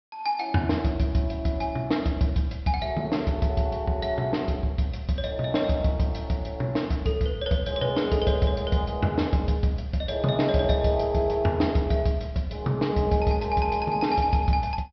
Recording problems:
low-pass filter; nothing above 5.5 kHz

